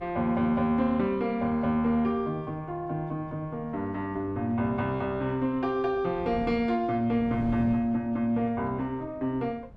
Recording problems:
wind noise; below 240 Hz, SNR 18 dB

